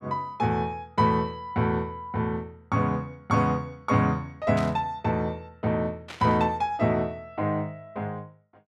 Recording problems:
burst of static; at 4.5 s and at 6 s; peak -7 dB vs average level

